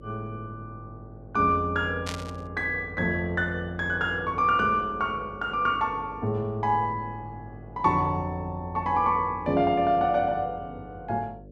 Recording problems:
hum; 50 Hz, harmonics up to 600 Hz, SNR 20 dB
static burst; at 2 s; peak -3 dB vs average level

